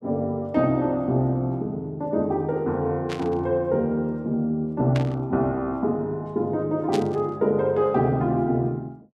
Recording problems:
burst of static; at 3 s, at 5 s and at 7 s; peak -5 dB vs average level

